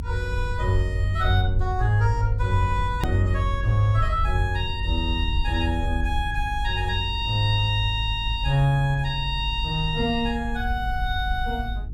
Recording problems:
hum; 50 Hz, harmonics up to 450 Hz, SNR 21 dB
low-frequency rumble; below 66 Hz, strongest tone 50 Hz, SNR 5 dB
edit click; at 3 s

